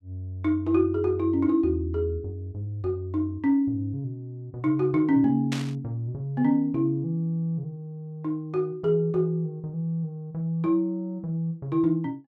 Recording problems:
burst of static; at 5.5 s; peak -3 dB vs average level

